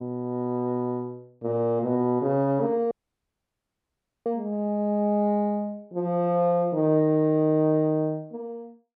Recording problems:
dropout; at 3 s for 1.5 s

